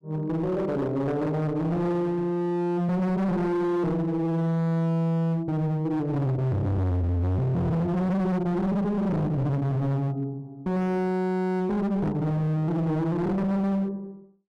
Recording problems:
distortion; hard clipping, signal-to-distortion ratio 7 dB

